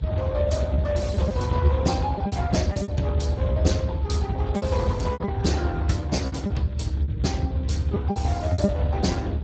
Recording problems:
lossy compression; Speex, log-spectral distance 3 dB, nothing above 7.6 kHz
rumble; below 130 Hz, strongest tone 72 Hz, SNR -2 dB
packet loss; 9% of the sound replaced, filled with repeated pitch periods

